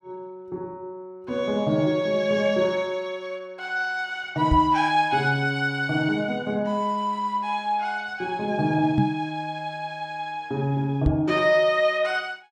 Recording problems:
knock on the microphone; at 4.5 s, at 9 s and at 11 s; peak +6 dB vs average level

